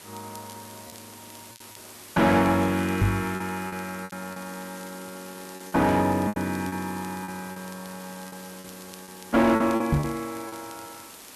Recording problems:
distortion; hard clipping, uneven, signal-to-distortion ratio 10 dB
background hiss; slope -2 dB per octave, SNR 17 dB
crackling; vinyl, SNR 25 dB
lost packets; 8% of the sound replaced, filled with repeated pitch periods
knock on the microphone; at 3 s and at 10 s; peak +6 dB vs average level

